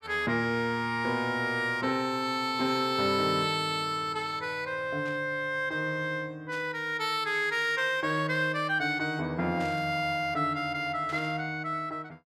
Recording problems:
burst of static; 4 times, first at 5 s; peak -14 dB vs average level

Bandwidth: 14.5 kHz